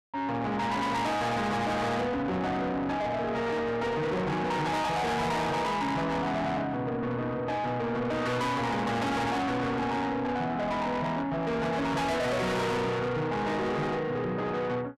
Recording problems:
distortion; soft clipping, signal-to-distortion ratio 6 dB

